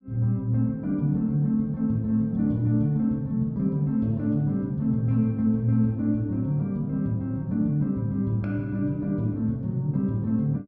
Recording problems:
none

